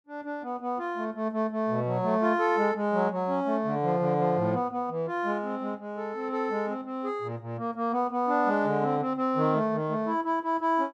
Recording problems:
none

